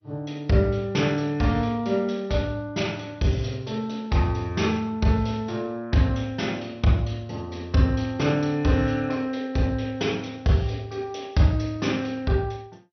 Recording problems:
lossy compression; MP2, log-spectral distance 3 dB, nothing above 6 kHz

